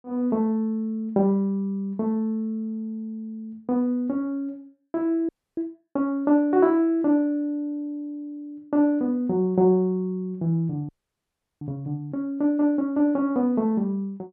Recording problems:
frozen audio; at 5.5 s and at 11 s for 0.5 s

